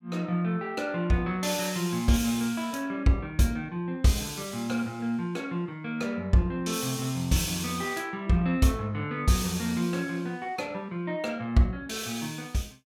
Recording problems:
none

